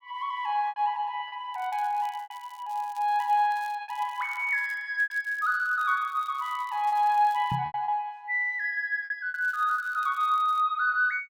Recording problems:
packet loss; 7% of the sound replaced, filled with repeated pitch periods
crackling; from 1.5 to 5 s, from 5 to 7.5 s and from 9.5 to 11 s; loose cable, SNR 27 dB
microphone thump; at 7.5 s; peak -2 dB vs average level

